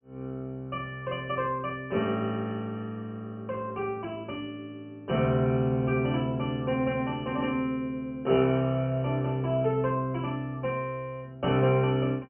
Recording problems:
treble missing; nothing above 3 kHz

